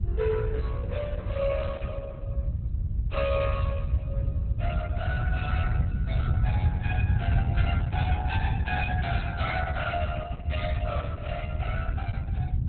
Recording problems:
lossy codec; Opus, log-spectral distance 2 dB, nothing above 4 kHz
low-frequency rumble; below 110 Hz, SNR -6 dB

